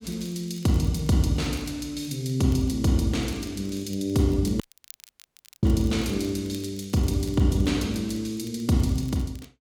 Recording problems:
crackle; vinyl, SNR 25 dB
dropout; at 4.5 s for 1 s

